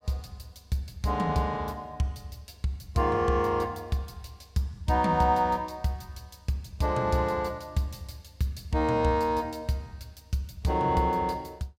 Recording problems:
none

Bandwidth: 16 kHz